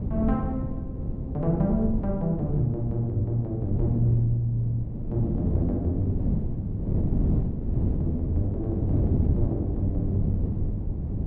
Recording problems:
wind on the microphone; below 200 Hz, SNR 1 dB

